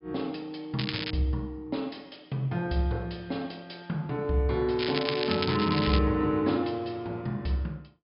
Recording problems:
low-pass filter; nothing above 5.5 kHz
crackling; at 1 s and from 5 to 6 s; loose cable, SNR 4 dB

